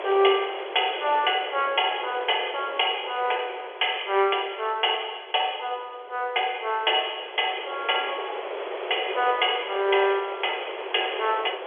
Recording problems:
telephone audio; 340 Hz to 3.4 kHz, G.711
wind on the microphone; below 1.2 kHz, SNR 10 dB

